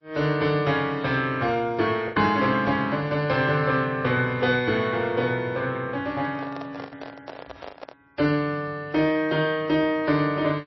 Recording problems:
lossy codec; MP3, log-spectral distance 2 dB, nothing above 5.7 kHz
packet loss; 1.6% of the sound replaced, filled with the last packet
handling noise; from 6 to 8 s; peak -10 dB vs average level

